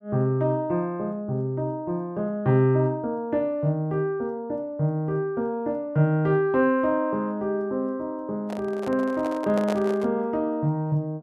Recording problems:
microphone handling noise; from 8.5 to 10 s; peak -3 dB vs average level

